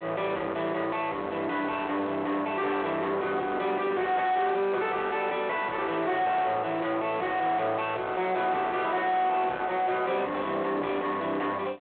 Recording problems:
telephone audio; 300 Hz to 4 kHz, G.726
distortion; soft clipping, signal-to-distortion ratio 5 dB

